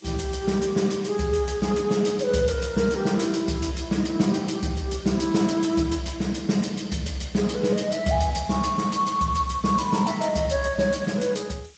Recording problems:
lossy compression; Speex, log-spectral distance 6 dB, nothing above 7.8 kHz
hiss; SNR 29 dB

